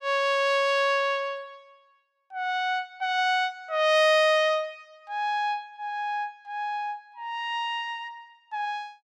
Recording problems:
none

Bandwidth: 15.5 kHz